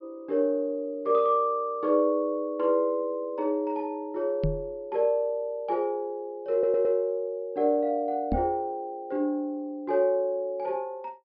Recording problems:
treble cut off; nothing above 5.5 kHz
knock on the microphone; at 4.5 s and at 8.5 s; peak +3 dB vs average level
audio stuttering; at 6.5 s

